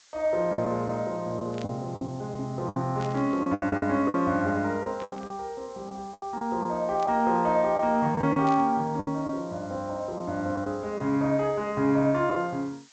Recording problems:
low-pass filter; nothing above 8 kHz
background hiss; slope +3 dB per octave, SNR 27 dB
packet loss; 9% of the sound replaced, filled with the last packet
static burst; 5 times, first at 1.5 s; peak -12 dB vs average level

